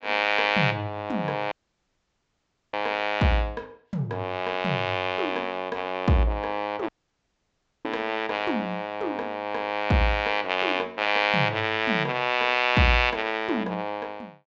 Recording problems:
treble missing; nothing above 8 kHz
audio cutting out; at 1.5 s for 1 s and at 7 s for 1 s

